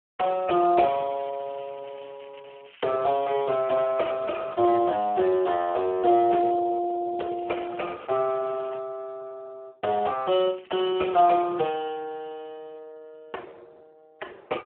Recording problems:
phone line; 280 Hz to 2.2 kHz, Speex
crackle; from 1 to 4.5 s, from 7.5 to 9 s and at 11 s; loose cable, SNR 27 dB

